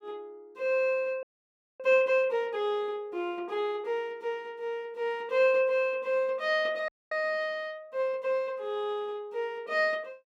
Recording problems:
frozen audio; at 1 s for 0.5 s and at 7 s

